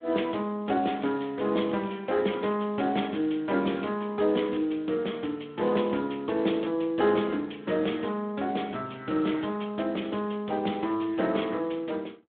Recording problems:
phone line; 170 Hz to 3.6 kHz, Speex
crackling; from 0.5 to 2 s; loose cable, SNR 27 dB

